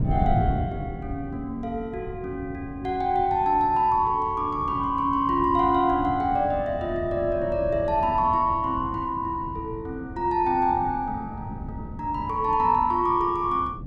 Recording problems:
wind noise; below 200 Hz, SNR 11 dB

